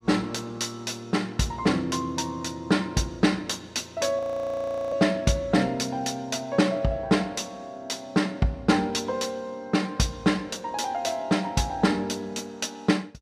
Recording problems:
audio freezing; at 4 s for 0.5 s

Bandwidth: 14.5 kHz